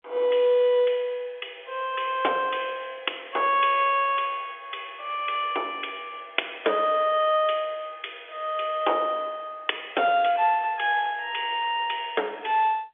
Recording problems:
telephone audio; 340 Hz to 3.5 kHz, G.711

